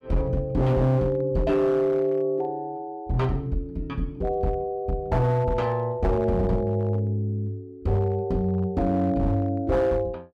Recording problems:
distortion; hard clipping, signal-to-distortion ratio 12 dB

